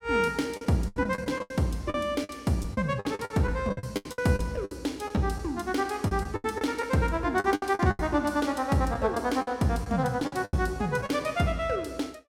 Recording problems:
packet loss; 13% of the sound replaced, filled with the last packet

